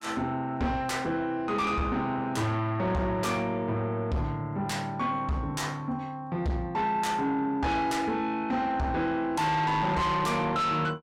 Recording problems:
distortion; soft clipping, signal-to-distortion ratio 6 dB

